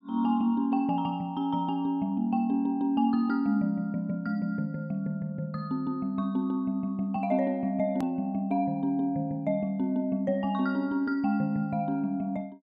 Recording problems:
hard cut with a click; at 8 s

